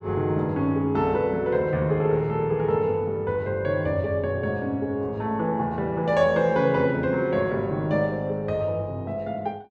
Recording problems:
none

